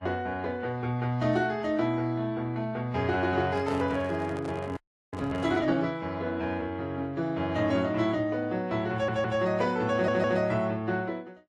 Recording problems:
lossy compression; AAC, then Vorbis, log-spectral distance 2 dB, nothing above 11.3 kHz
microphone handling noise; from 3.5 to 5.5 s; peak -6 dB vs average level
audio freezing; at 5 s
audio stuttering; at 9 s and at 10 s

